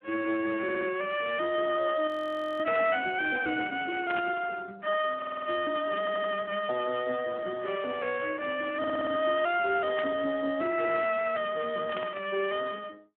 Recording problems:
phone line; 280 Hz to 3.5 kHz, Speex
audio stuttering; 4 times, first at 0.5 s
frozen audio; at 2 s for 0.5 s
burst of static; 4 times, first at 2.5 s; peak -2 dB vs average level

